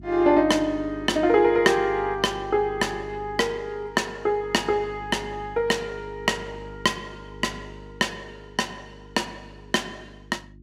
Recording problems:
electrical hum; 50 Hz, harmonics up to 350 Hz, SNR 19 dB

